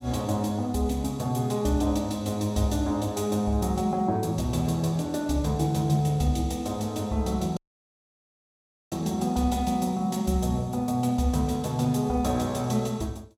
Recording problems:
audio cutting out; at 7.5 s for 1.5 s

